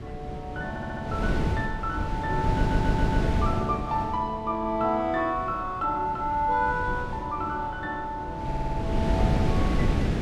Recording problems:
wind noise; below 240 Hz, SNR 0 dB
audio stuttering; at 0.5 s, at 2.5 s and at 8.5 s

